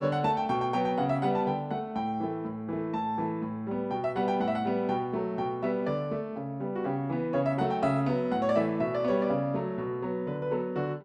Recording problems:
none

